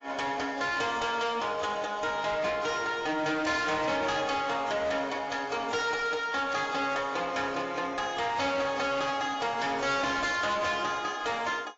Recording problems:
codec artefacts; AAC, log-spectral distance 4 dB, nothing above 7.3 kHz
distorted audio; hard clipping, uneven, signal-to-distortion ratio 7 dB

